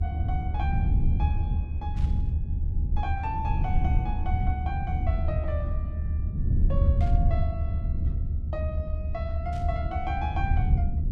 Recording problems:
rumble; below 92 Hz, SNR -9 dB
burst of static; at 2 s, at 7 s and at 9.5 s; peak -9 dB vs average level

